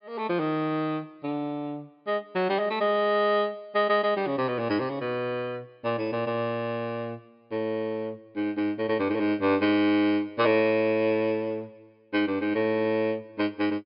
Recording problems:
treble cut off; nothing above 5.1 kHz

